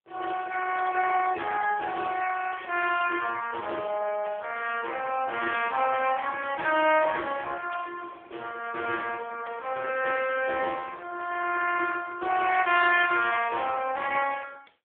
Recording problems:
telephone audio; 280 Hz to 3.3 kHz, AMR-NB

